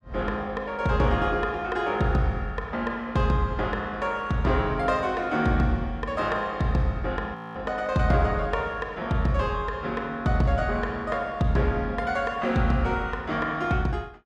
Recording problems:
frozen audio; at 7.5 s

